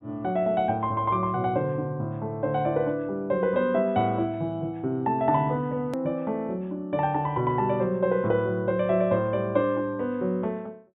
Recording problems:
treble cut off; nothing above 4 kHz
hard cut with a click; at 6 s

